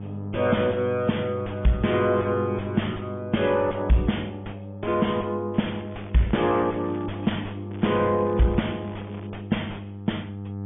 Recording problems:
low-pass filter; nothing above 3.5 kHz
codec artefacts; MP3, log-spectral distance 4 dB
distortion; soft clipping, signal-to-distortion ratio 5 dB
hum; 50 Hz, harmonics up to 900 Hz, SNR 10 dB
crackling; from 5.5 to 7.5 s and from 7.5 to 9.5 s; loose cable, SNR 21 dB

